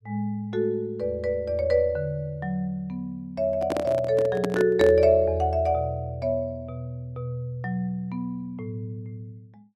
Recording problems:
microphone handling noise; from 3.5 to 5 s; peak +2 dB vs average level

